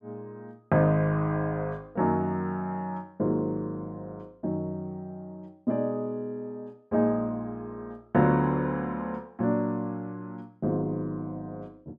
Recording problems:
none

